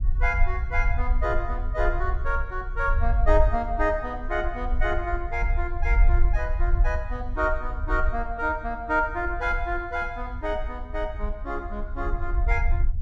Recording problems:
low-frequency rumble; below 52 Hz, SNR 1 dB

